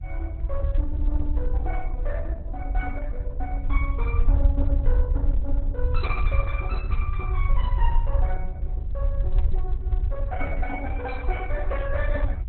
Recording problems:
codec artefacts; Opus, log-spectral distance 2 dB, nothing above 4 kHz
rumble; below 62 Hz, SNR -8 dB

